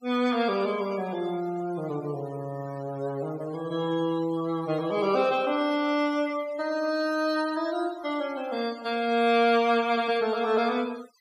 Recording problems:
noise reduction artefacts; signal-to-artefact ratio 20 dB

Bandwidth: 15.5 kHz